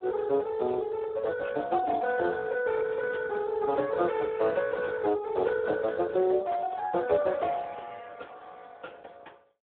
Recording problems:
phone line; 300 Hz to 2.1 kHz, Speex

